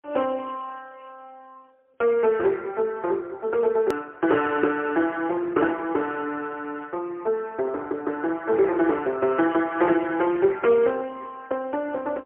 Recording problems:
phone line; 280 Hz to 3.3 kHz, AMR-NB, then MP3
hard cut with a click; at 4 s

